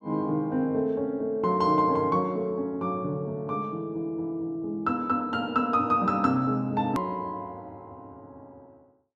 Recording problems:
hard cut with a click; at 7 s

